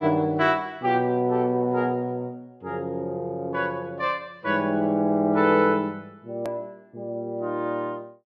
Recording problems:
click at an edit; at 6.5 s

